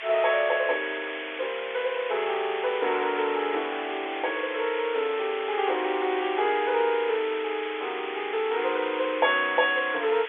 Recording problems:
phone line; 320 Hz to 3.5 kHz, G.711
background hiss; SNR 9 dB
wind on the microphone; below 2 kHz, SNR 23 dB

